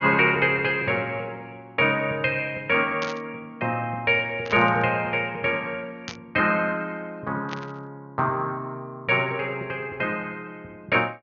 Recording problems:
treble missing; nothing above 6.7 kHz
burst of static; 4 times, first at 3 s; peak -5 dB vs average level

